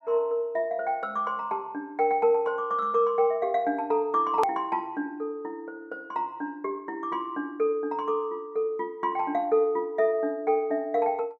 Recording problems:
edit click; at 4.5 s

